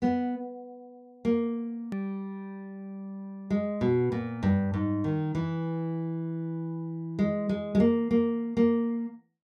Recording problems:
click at an edit; at 2 s

